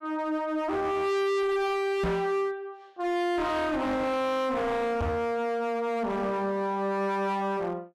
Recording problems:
distortion; hard clipping, uneven, signal-to-distortion ratio 6 dB
knock on the microphone; at 2 s and at 5 s; peak +5 dB vs average level

